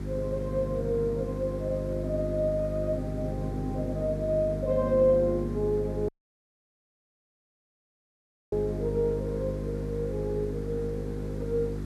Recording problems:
hum; 50 Hz, harmonics up to 400 Hz, SNR 5 dB
hiss; SNR 22 dB
dropout; at 6 s for 2.5 s

